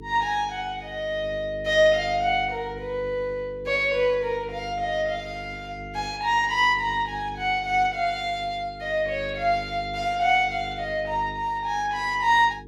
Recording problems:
electrical hum; 50 Hz, harmonics up to 450 Hz, SNR 17 dB

